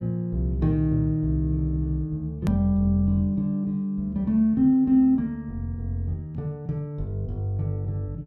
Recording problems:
hard cut with a click; at 2.5 s

